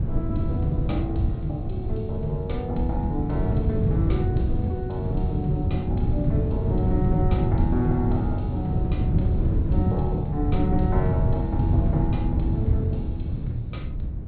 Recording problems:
treble missing; nothing above 4.3 kHz
wind on the microphone; below 140 Hz, SNR -4 dB

